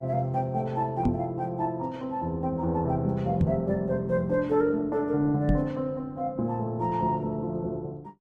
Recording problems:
lossy codec; Opus, log-spectral distance 2 dB
knock on the microphone; at 1 s, at 3.5 s and at 5.5 s; peak +6 dB vs average level

